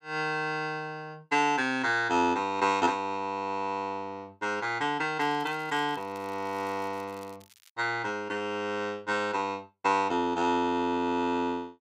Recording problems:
crackle; from 5 to 7.5 s; loose cable, SNR 26 dB

